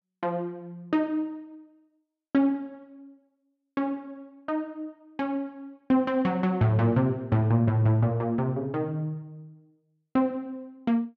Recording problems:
none

